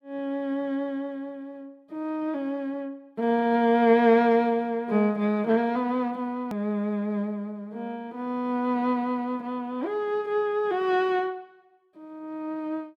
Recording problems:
edit click; at 6.5 s

